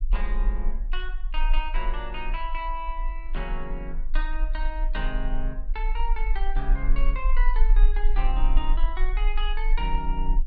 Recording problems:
low-frequency rumble; below 34 Hz, strongest tone 24 Hz, SNR -6 dB

